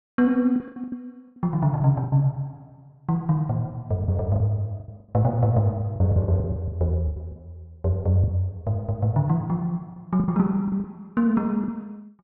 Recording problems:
lost packets; 11% of the sound replaced, filled with the last packet

